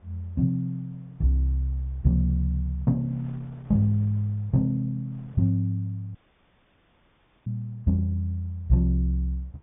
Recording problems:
treble cut off; nothing above 3.6 kHz
wind noise; below 570 Hz, SNR 30 dB
audio cutting out; at 6 s for 1.5 s

